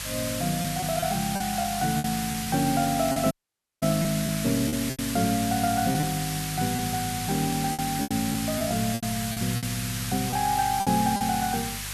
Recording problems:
hum; 50 Hz, harmonics up to 350 Hz, SNR 15 dB
background hiss; SNR 5 dB
lost packets; 9% of the sound replaced, filled with repeated pitch periods
dropout; at 3.5 s for 0.5 s

